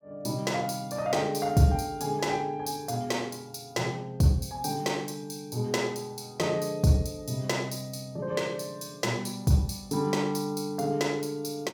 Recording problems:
none

